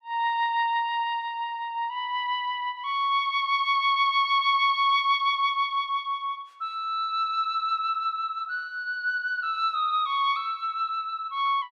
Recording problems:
none

